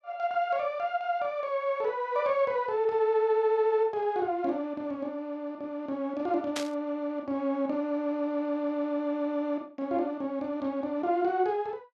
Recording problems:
burst of static; at 6.5 s; peak 0 dB vs average level

